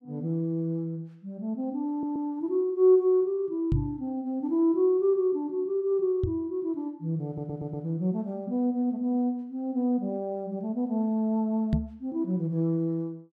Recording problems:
stutter; at 2 s and at 7.5 s
knock on the microphone; at 3.5 s, at 6 s and at 12 s; peak +5 dB vs average level

